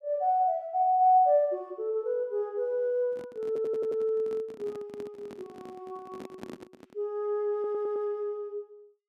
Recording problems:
handling noise; from 3 to 7 s; peak -9 dB vs average level
stutter; at 3.5 s and at 7.5 s

